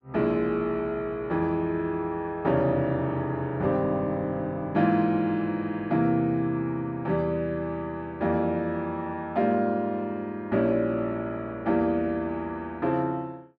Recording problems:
none

